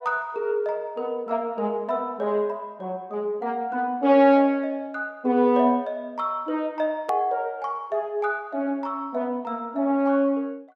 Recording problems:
edit click; at 7 s

